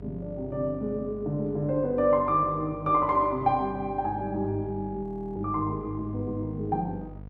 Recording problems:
electrical hum; 50 Hz, harmonics up to 750 Hz, SNR 16 dB
audio freezing; at 5 s

